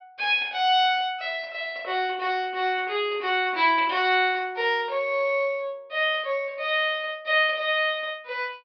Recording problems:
treble missing; nothing above 5.5 kHz

